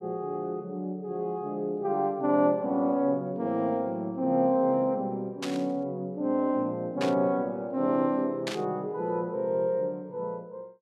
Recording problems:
static burst; at 5.5 s, at 7 s and at 8.5 s; peak -1 dB vs average level

